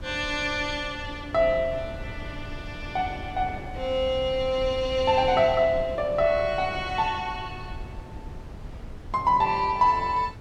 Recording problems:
wind on the microphone; below 170 Hz, SNR 15 dB

